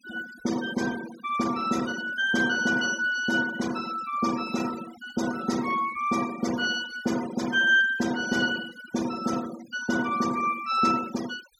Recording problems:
denoising artefacts; signal-to-artefact ratio 15 dB

